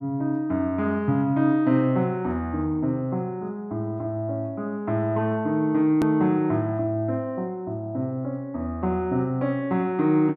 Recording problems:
hard cut with a click; at 6 s

